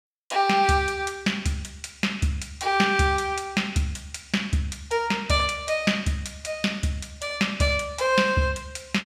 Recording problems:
none

